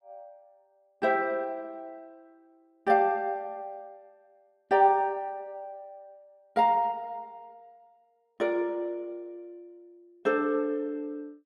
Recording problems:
none

